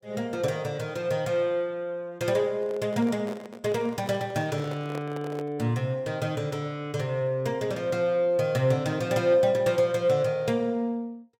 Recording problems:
handling noise; from 2.5 to 5.5 s; peak -7 dB vs average level

